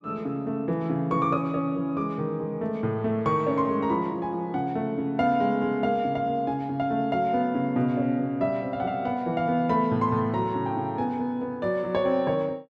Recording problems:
none

